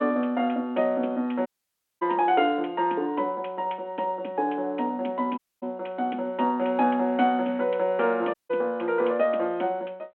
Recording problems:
telephone audio; 220 Hz to 3.4 kHz, G.726
audio cutting out; at 1.5 s for 0.5 s, at 5.5 s and at 8.5 s

